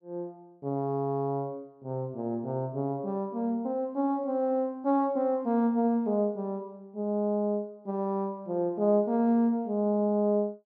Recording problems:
none

